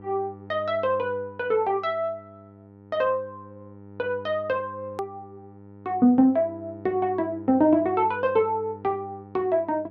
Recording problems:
electrical hum; 50 Hz, harmonics up to 1.3 kHz, SNR 20 dB
click at an edit; at 5 s

